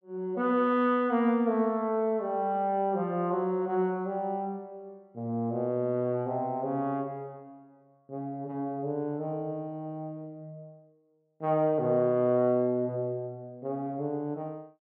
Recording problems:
none

